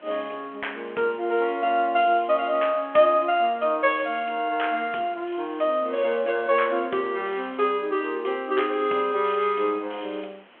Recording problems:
telephone audio; 220 Hz to 3.3 kHz, G.726
hiss; SNR 27 dB

